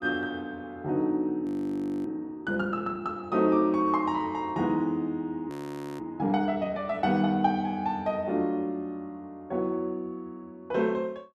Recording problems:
frozen audio; at 1.5 s for 0.5 s and at 5.5 s

